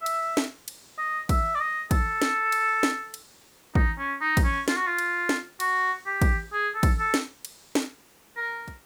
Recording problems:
hiss; slope -3 dB per octave, SNR 29 dB

